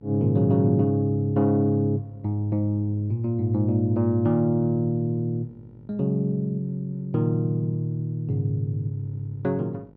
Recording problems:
electrical hum; 50 Hz, harmonics up to 950 Hz, SNR 28 dB

